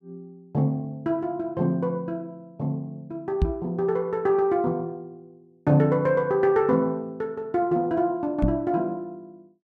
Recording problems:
microphone bump; at 3.5 s and at 8.5 s; peak +6 dB vs average level

